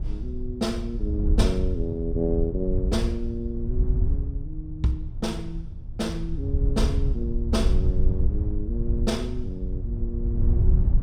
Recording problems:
wind noise; below 76 Hz, SNR -3 dB

